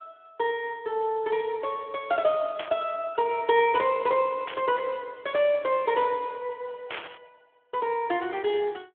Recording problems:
telephone audio; 150 Hz to 3.4 kHz, Speex
burst of static; at 2.5 s, at 4.5 s and at 7 s; peak -3 dB vs average level

